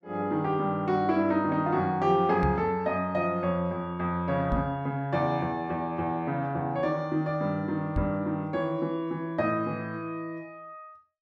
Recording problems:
microphone bump; at 2.5 s, at 4.5 s and at 8 s; peak +2 dB vs average level

